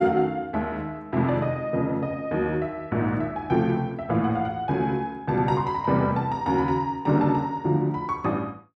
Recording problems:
none

